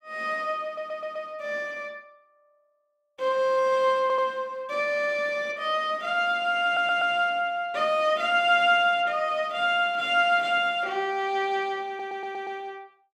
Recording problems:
stutter; 4 times, first at 0.5 s

